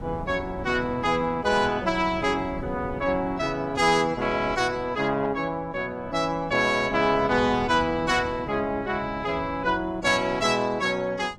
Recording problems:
codec artefacts; AAC, log-spectral distance 2 dB
wind noise; below 340 Hz, SNR 16 dB

